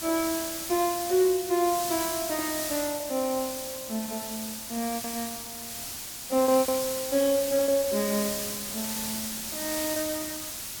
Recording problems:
hiss; SNR 4 dB
packet loss; 5% of the sound replaced, filled with repeated pitch periods

